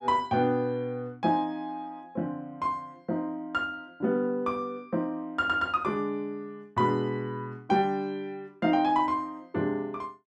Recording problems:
none

